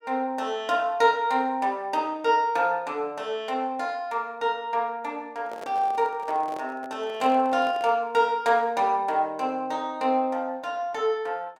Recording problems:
microphone handling noise; from 5.5 to 8 s; peak -10 dB vs average level

